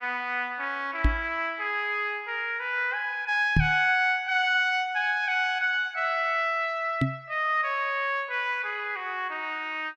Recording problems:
knock on the microphone; at 1 s, at 3.5 s and at 7 s; peak +6 dB vs average level

